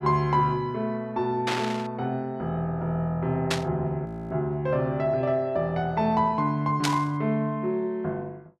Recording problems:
static burst; at 1.5 s, at 3.5 s and at 7 s; peak +4 dB vs average level
frozen audio; at 4 s

